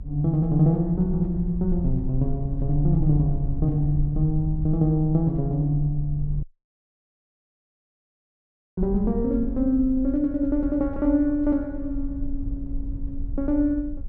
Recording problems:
low-frequency rumble; below 56 Hz, strongest tone 20 Hz, SNR 10 dB
audio cutting out; at 6.5 s for 2.5 s

